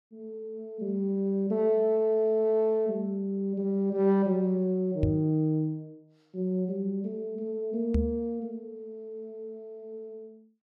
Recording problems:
knock on the microphone; at 5 s and at 8 s; peak +5 dB vs average level

